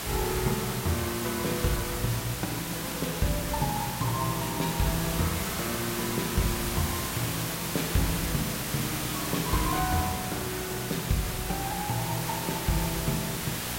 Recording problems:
electrical hum; 60 Hz, harmonics up to 720 Hz, SNR 12 dB
hiss; slope -2 dB per octave, SNR 1 dB

